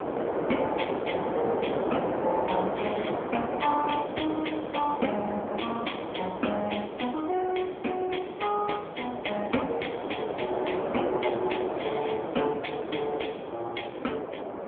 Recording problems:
telephone audio; 260 Hz to 3.4 kHz, AMR-NB
wind noise; below 790 Hz, SNR 1 dB

